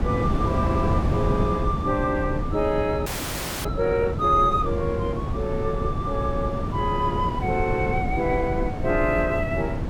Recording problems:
rumble; below 130 Hz, SNR 12 dB
wind on the microphone; below 290 Hz, SNR 3 dB
audio freezing; at 3 s for 0.5 s

